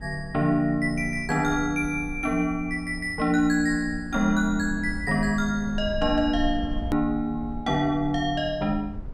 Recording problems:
rumble; below 66 Hz, strongest tone 20 Hz, SNR 14 dB
edit click; at 7 s

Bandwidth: 16 kHz